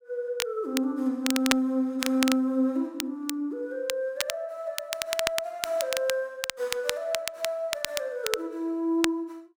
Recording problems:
crackling; vinyl, SNR 4 dB

